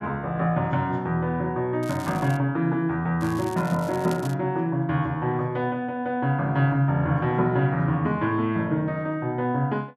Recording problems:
crackling; at 2 s and from 3 to 4.5 s; loose cable, SNR 20 dB

